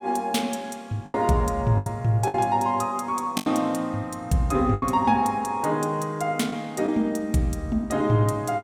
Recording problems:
lost packets; 5% of the sound replaced, filled with the last packet

